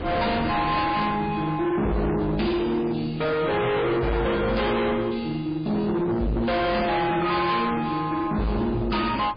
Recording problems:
lossy codec; MP3, log-spectral distance 4 dB, nothing above 4.5 kHz
distortion; hard clipping, signal-to-distortion ratio 6 dB
wind on the microphone; below 840 Hz, SNR 16 dB

